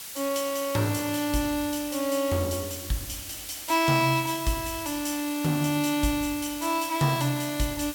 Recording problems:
hiss; slope +2 dB per octave, SNR 10 dB

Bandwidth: 17 kHz